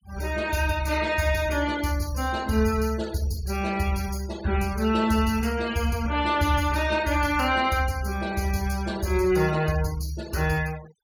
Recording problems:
denoising artefacts; signal-to-artefact ratio 19 dB

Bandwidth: 17.5 kHz